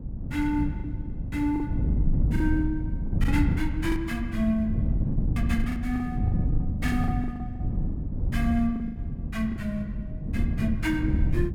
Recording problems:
wind noise; below 150 Hz, SNR -1 dB
lost packets; 11% of the sound replaced, filled with the last packet

